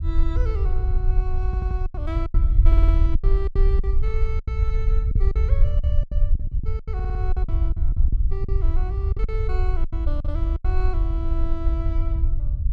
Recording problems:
low-frequency rumble; below 62 Hz, SNR -12 dB
lost packets; 11% of the sound replaced, filled with silence
stutter; at 1.5 s, at 2.5 s and at 7 s

